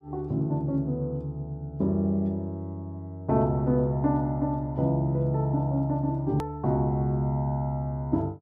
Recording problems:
hard cut with a click; at 6.5 s

